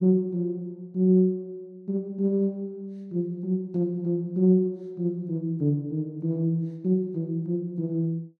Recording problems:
none

